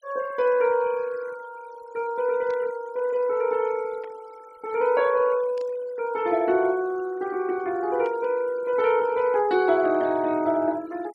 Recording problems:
noise reduction artefacts; signal-to-artefact ratio 23 dB
burst of static; 4 times, first at 2.5 s; peak -19 dB vs average level

